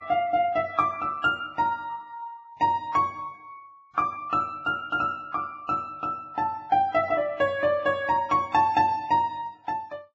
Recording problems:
lossy codec; Vorbis, log-spectral distance 2 dB, nothing above 7.6 kHz

